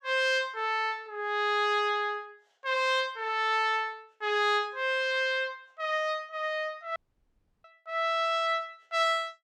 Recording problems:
audio cutting out; at 7 s for 0.5 s

